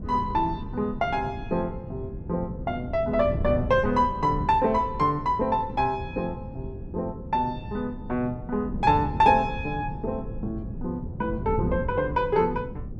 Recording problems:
wind on the microphone; below 200 Hz, SNR 9 dB

